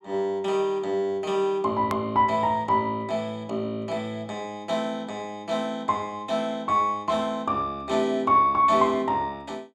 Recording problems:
hard cut with a click; at 2 s

